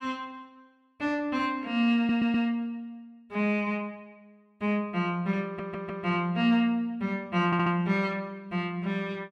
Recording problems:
audio stuttering; at 2 s, at 5.5 s and at 7.5 s

